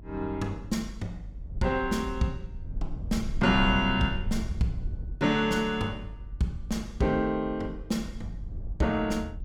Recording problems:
low-frequency rumble; below 80 Hz, SNR 10 dB

